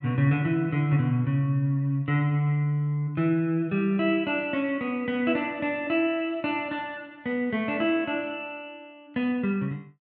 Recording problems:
none

